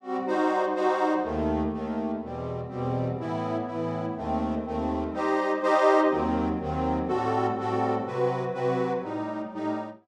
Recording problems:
none

